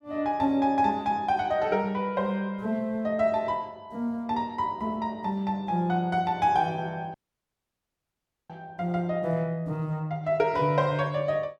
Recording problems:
audio cutting out; at 7 s for 1.5 s

